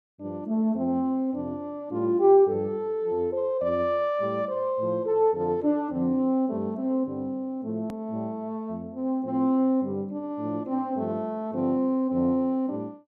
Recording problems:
click at an edit; at 8 s

